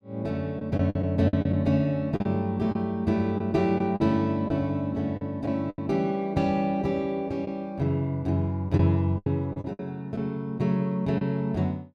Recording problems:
lost packets; 7% of the sound replaced, filled with the last packet

